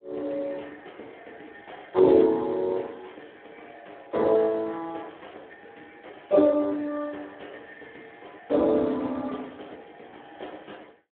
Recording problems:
telephone audio; 260 Hz to 3.7 kHz, Speex

